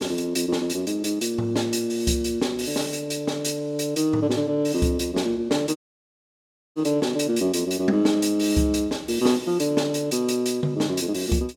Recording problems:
dropout; at 6 s for 1 s

